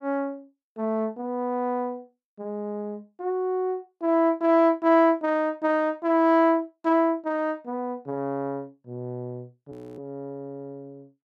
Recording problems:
frozen audio; at 9.5 s

